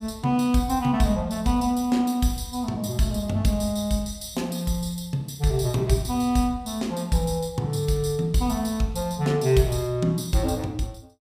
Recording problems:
none

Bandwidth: 15 kHz